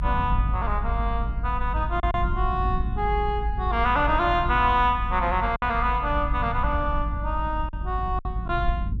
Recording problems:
low-frequency rumble; below 76 Hz, strongest tone 52 Hz, SNR 4 dB
packet loss; 3% of the sound replaced, filled with silence

